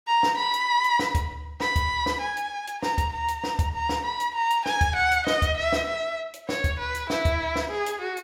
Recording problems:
none

